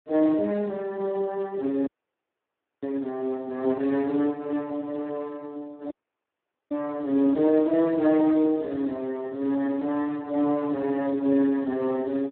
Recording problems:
phone line; 220 Hz to 2.2 kHz, Speex
dropout; at 2 s for 1 s and at 6 s for 1 s

